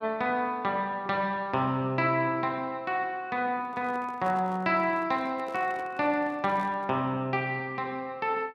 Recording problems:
microphone handling noise; from 3.5 to 7 s; peak -11 dB vs average level

